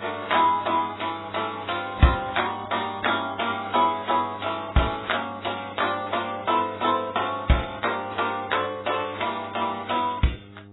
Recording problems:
codec artefacts; MP3, then AAC, log-spectral distance 7 dB, nothing above 3.8 kHz
electrical hum; 50 Hz, harmonics up to 1.2 kHz, SNR 21 dB

